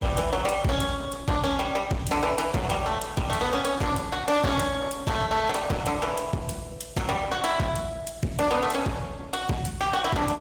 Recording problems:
lossy compression; Opus, log-spectral distance 4 dB, nothing above 19 kHz
distorted audio; hard clipping, signal-to-distortion ratio 10 dB

